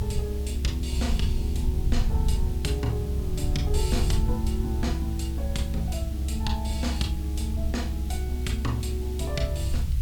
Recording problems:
electrical hum; 50 Hz, harmonics up to 550 Hz, SNR 25 dB
hiss; slope +1 dB per octave, SNR 15 dB
rumble; below 70 Hz, strongest tone 68 Hz, SNR -3 dB

